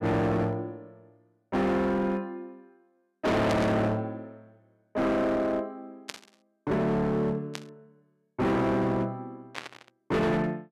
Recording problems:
distortion; hard clipping, signal-to-distortion ratio 6 dB
static burst; 4 times, first at 3.5 s; peak -3 dB vs average level

